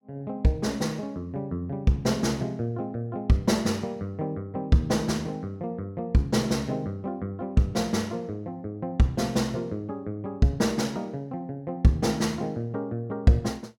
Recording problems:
none

